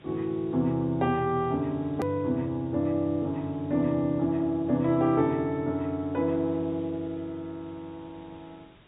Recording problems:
treble missing; nothing above 4 kHz
hiss; SNR 27 dB
click at an edit; at 2 s

